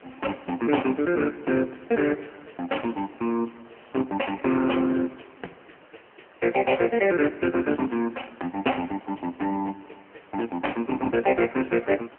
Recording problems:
telephone audio; 240 Hz to 3 kHz, AMR-NB
background hiss; SNR 26 dB

